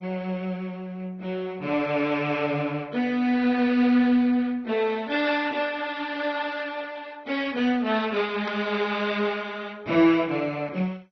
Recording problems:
lossy compression; MP2, log-spectral distance 3 dB, nothing above 5.3 kHz
burst of static; at 8.5 s; peak -8 dB vs average level

